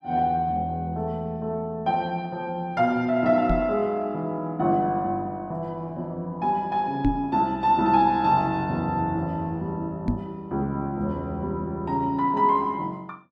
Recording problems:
microphone bump; at 3.5 s, at 7 s and at 10 s; peak +5 dB vs average level

